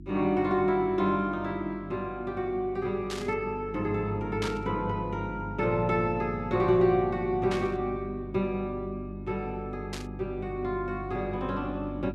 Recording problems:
hum; 50 Hz, harmonics up to 350 Hz, SNR 12 dB
static burst; 4 times, first at 3 s; peak -2 dB vs average level

